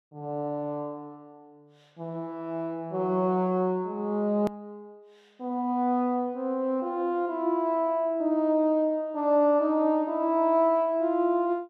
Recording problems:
hard cut with a click; at 4.5 s

